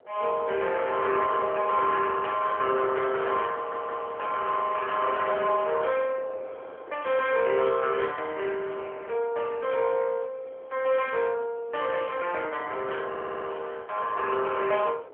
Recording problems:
telephone audio; 320 Hz to 3.2 kHz, AMR-NB
wind noise; below 710 Hz, SNR 21 dB
stutter; at 3.5 s and at 13 s

